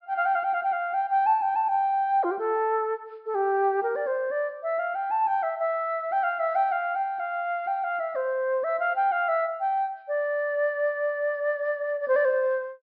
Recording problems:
low-pass filter; nothing above 5.5 kHz

